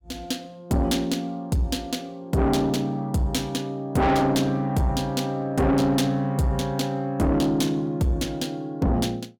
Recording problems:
distortion; soft clipping, signal-to-distortion ratio 7 dB

